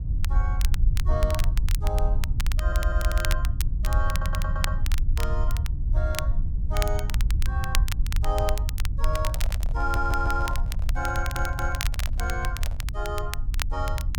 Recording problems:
electrical hum; 60 Hz, harmonics up to 300 Hz, SNR 19 dB
low-frequency rumble; below 68 Hz, SNR -5 dB
crackle; vinyl, SNR 4 dB
audio stuttering; 4 times, first at 2.5 s
microphone handling noise; from 9 to 13 s; peak -6 dB vs average level

